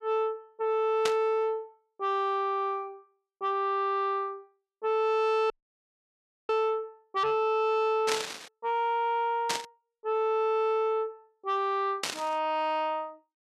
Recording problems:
distortion; soft clipping, signal-to-distortion ratio 12 dB
static burst; 4 times, first at 1 s; peak +3 dB vs average level
audio cutting out; at 5.5 s for 1 s

